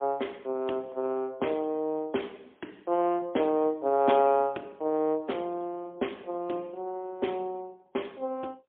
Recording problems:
telephone audio; 260 Hz to 3.5 kHz, AMR-NB, then MP3

